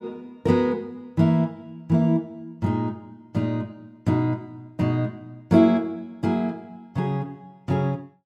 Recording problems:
none

